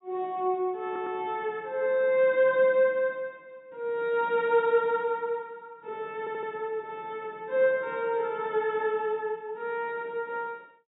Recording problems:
low-pass filter; nothing above 4 kHz
stutter; at 1 s and at 6 s

